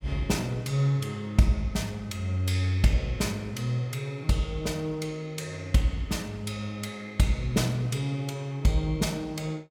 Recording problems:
none

